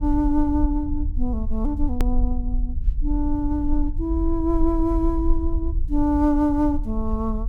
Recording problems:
rumble; below 52 Hz, SNR 4 dB
hard cut with a click; at 2 s

